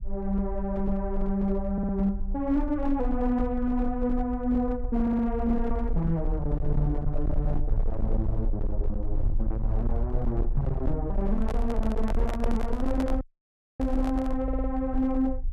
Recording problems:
distortion; hard clipping, signal-to-distortion ratio 12 dB
rumble; below 50 Hz, SNR 4 dB
stutter; at 1.5 s, at 5 s and at 14 s
microphone handling noise; from 11 to 14 s; peak -2 dB vs average level
audio cutting out; at 13 s for 0.5 s

